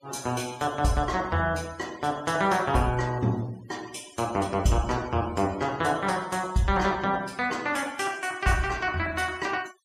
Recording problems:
denoising artefacts; signal-to-artefact ratio 21 dB

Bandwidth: 14.5 kHz